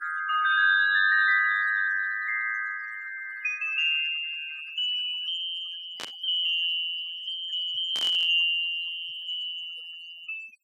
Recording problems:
denoising artefacts; signal-to-artefact ratio 18 dB
static burst; at 6 s and at 8 s; peak -7 dB vs average level

